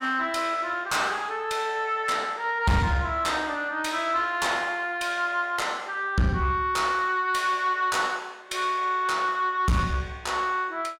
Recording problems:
distortion; soft clipping, signal-to-distortion ratio 10 dB

